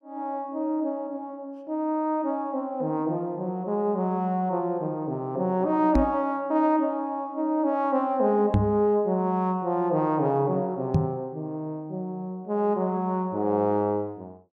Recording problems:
microphone thump; at 6 s, at 8.5 s and at 11 s; peak +7 dB vs average level

